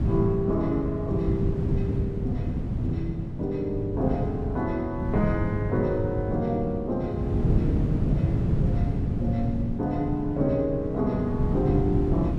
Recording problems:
wind on the microphone; below 180 Hz, SNR 1 dB

